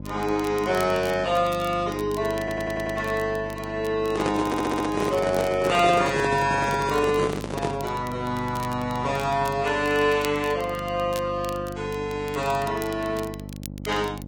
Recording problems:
codec artefacts; Vorbis, log-spectral distance 3 dB
hum; 50 Hz, harmonics up to 600 Hz, SNR 12 dB
crackle; vinyl, SNR 19 dB
stutter; at 2.5 s and at 4.5 s
microphone handling noise; from 4 to 8 s; peak +1 dB vs average level

